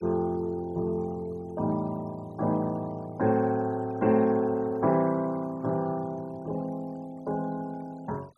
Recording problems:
noise reduction artefacts; signal-to-artefact ratio 25 dB

